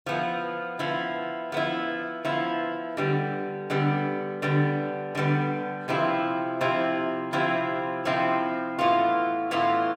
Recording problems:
none

